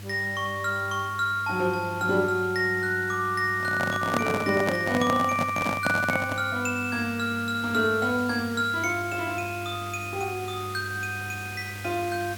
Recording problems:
hum; 50 Hz, harmonics up to 700 Hz, SNR 14 dB
hiss; slope -1 dB per octave, SNR 17 dB
microphone handling noise; from 3.5 to 6.5 s; peak +3 dB vs average level

